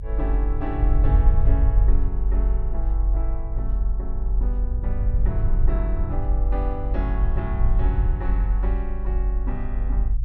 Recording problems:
rumble; below 48 Hz, strongest tone 46 Hz, SNR -10 dB

